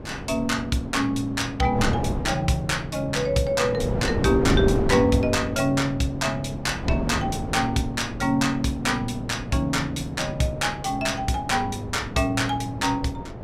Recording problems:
hum; 60 Hz, harmonics up to 1.7 kHz, SNR 24 dB
wind noise; below 400 Hz, SNR 7 dB

